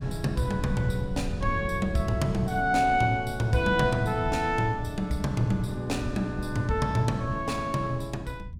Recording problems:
low-frequency rumble; below 110 Hz, SNR 10 dB

